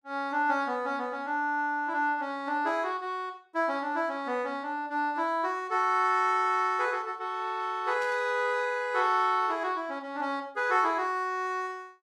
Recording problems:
static burst; at 8 s; peak -14 dB vs average level

